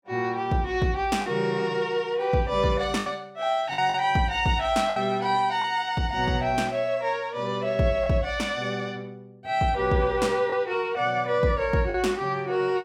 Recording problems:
lost packets; 3% of the sound replaced, filled with the last packet

